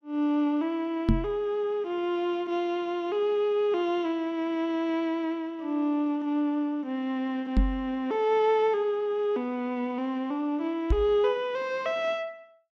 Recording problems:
microphone bump; at 1 s, at 7.5 s and at 11 s; peak +7 dB vs average level

